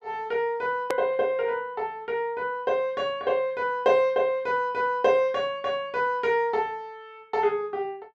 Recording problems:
edit click; at 1 s

